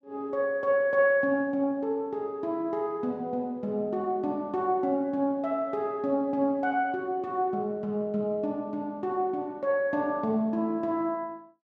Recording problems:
none

